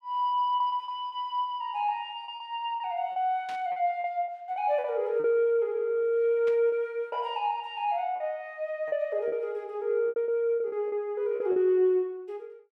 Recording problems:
packet loss; 9% of the sound replaced, filled with repeated pitch periods
static burst; at 3.5 s and at 6.5 s; peak -11 dB vs average level

